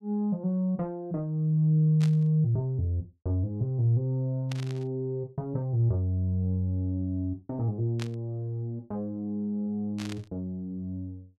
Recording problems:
burst of static; 4 times, first at 2 s; peak -6 dB vs average level

